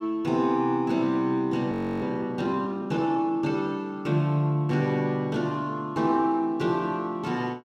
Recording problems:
frozen audio; at 1.5 s

